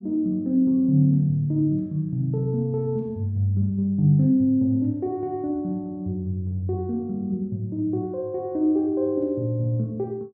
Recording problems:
none

